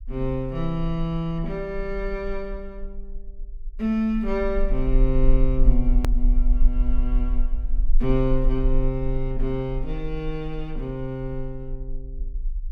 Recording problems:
rumble; below 38 Hz, strongest tone 24 Hz, SNR 0 dB
click at an edit; at 6 s

